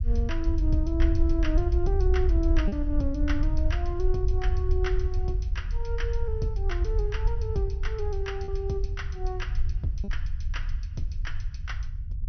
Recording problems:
low-pass filter; nothing above 6 kHz
rumble; below 66 Hz, SNR -4 dB
packet loss; 1.1% of the sound replaced, filled with repeated pitch periods

